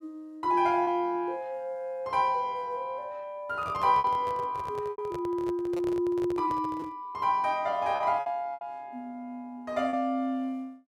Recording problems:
packet loss; 4% of the sound replaced, filled with repeated pitch periods
handling noise; from 3.5 to 7 s; peak -7 dB vs average level

